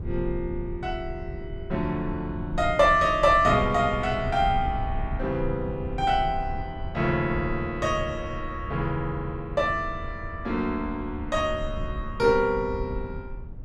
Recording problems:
low-frequency rumble; below 92 Hz, SNR 11 dB

